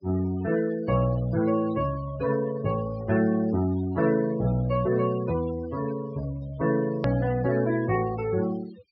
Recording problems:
treble missing; nothing above 5.5 kHz
noise reduction artefacts; signal-to-artefact ratio 17 dB
click at an edit; at 7 s

